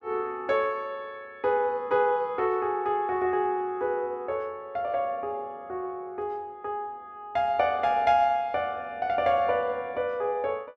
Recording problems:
none

